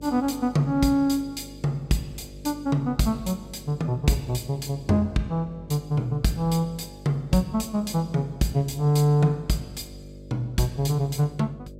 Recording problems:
hum; 50 Hz, harmonics up to 600 Hz, SNR 18 dB

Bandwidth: 16 kHz